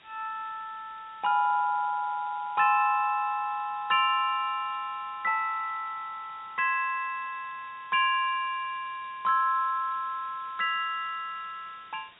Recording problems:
treble missing; nothing above 4 kHz
hiss; SNR 26 dB

